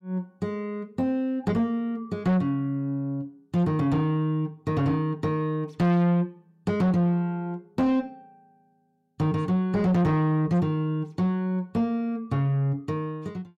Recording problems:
distortion; soft clipping, signal-to-distortion ratio 6 dB

